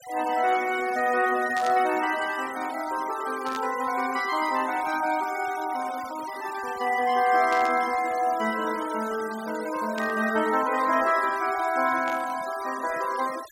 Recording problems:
noise reduction artefacts; signal-to-artefact ratio 16 dB
burst of static; 5 times, first at 1.5 s; peak -7 dB vs average level

